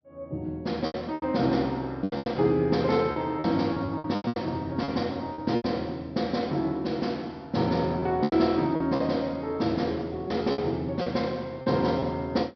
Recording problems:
treble missing; nothing above 5.5 kHz
packet loss; 10% of the sound replaced, filled with repeated pitch periods

